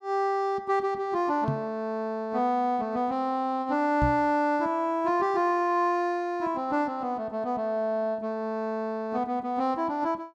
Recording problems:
microphone bump; at 1.5 s and at 4 s; peak +3 dB vs average level

